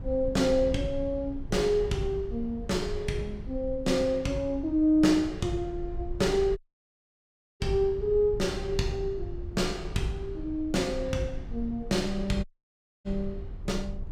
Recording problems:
rumble; below 76 Hz, SNR 12 dB
audio cutting out; at 6.5 s for 1 s and at 12 s for 0.5 s

